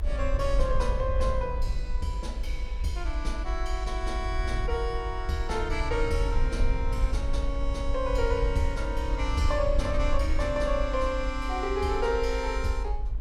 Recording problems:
rumble; below 54 Hz, SNR 1 dB
wind noise; below 550 Hz, SNR 21 dB

